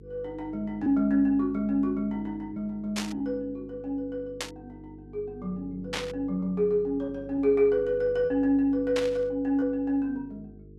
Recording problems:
hum; 50 Hz, harmonics up to 450 Hz, SNR 19 dB
packet loss; 1.7% of the sound replaced, filled with repeated pitch periods
burst of static; 4 times, first at 3 s; peak 0 dB vs average level

